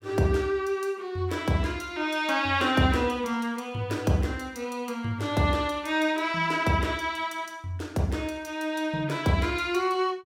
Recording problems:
none

